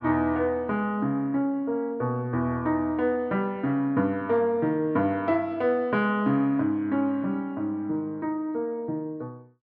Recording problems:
none

